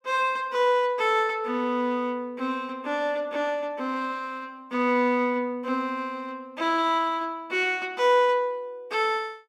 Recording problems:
none

